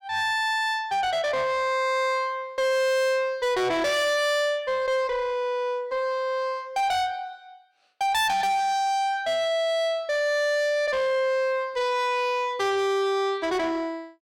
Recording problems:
distortion; soft clipping, signal-to-distortion ratio 7 dB

